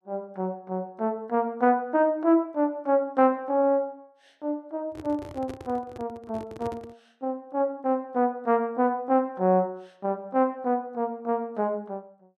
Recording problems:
microphone handling noise; from 5 to 7 s; peak -8 dB vs average level

